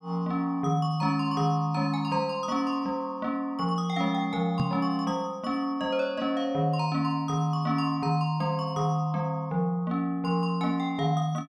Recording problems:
microphone thump; at 4.5 s; peak +3 dB vs average level

